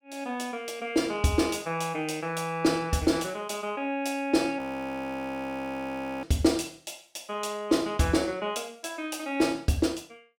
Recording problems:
frozen audio; at 4.5 s for 1.5 s

